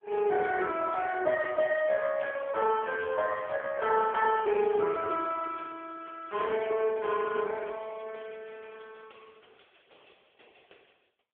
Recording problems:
phone line; 340 Hz to 3.1 kHz, AMR-NB

